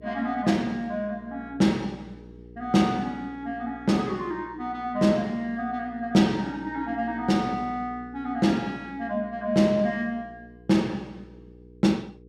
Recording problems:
electrical hum; 60 Hz, harmonics up to 480 Hz, SNR 22 dB

